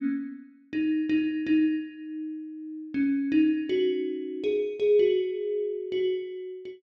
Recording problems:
none

